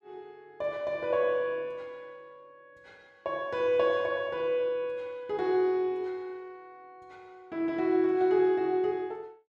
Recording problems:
none

